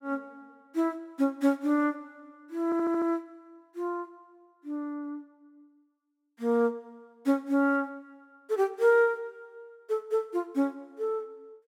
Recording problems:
audio stuttering; at 2.5 s

